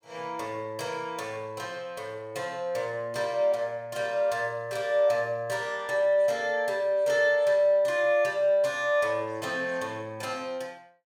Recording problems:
none

